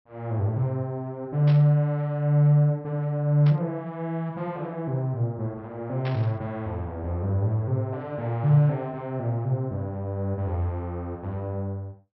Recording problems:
treble cut off; nothing above 5.6 kHz
burst of static; at 1.5 s, at 3.5 s and at 6 s; peak -8 dB vs average level

